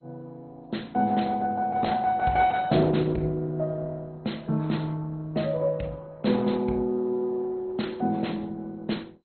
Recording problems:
codec artefacts; Opus, then MP2, log-spectral distance 3 dB, nothing above 4.2 kHz

